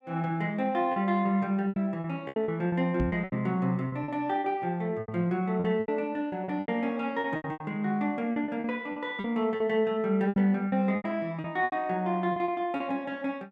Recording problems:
lost packets; 13% of the sound replaced, filled with repeated pitch periods
knock on the microphone; at 3 s; peak +1 dB vs average level

